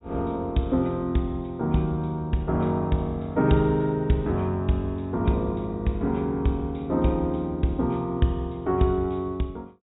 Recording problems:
treble missing; nothing above 4 kHz

